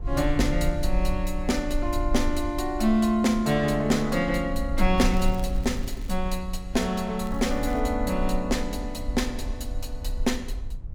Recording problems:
low-frequency rumble; below 52 Hz, strongest tone 20 Hz, SNR 7 dB
crackling; from 5 to 6 s and at 7 s; loose cable, SNR 25 dB

